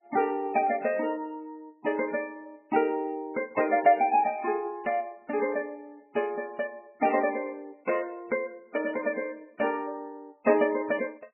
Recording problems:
codec artefacts; MP3, log-spectral distance 3 dB, nothing above 2.4 kHz

